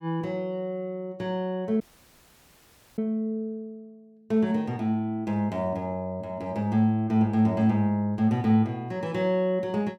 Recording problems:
audio cutting out; at 2 s for 1 s

